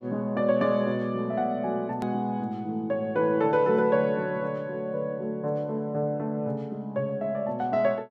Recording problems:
click at an edit; at 2 s

